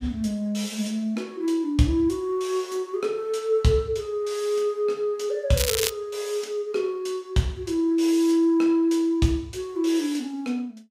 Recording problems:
crackle; at 5.5 s; loose cable, SNR 2 dB

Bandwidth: 15.5 kHz